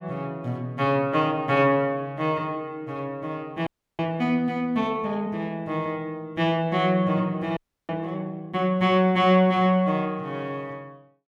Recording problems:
frozen audio; at 3.5 s and at 7.5 s

